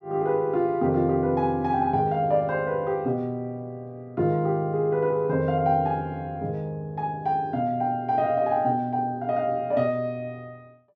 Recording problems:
none

